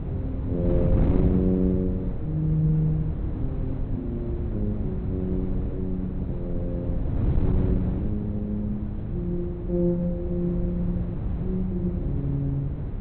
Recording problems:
treble cut off; nothing above 4.2 kHz
wind on the microphone; below 160 Hz, SNR 1 dB

